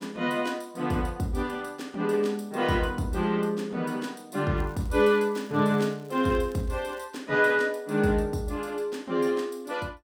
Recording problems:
crackling; from 4.5 to 7 s; loose cable, SNR 28 dB

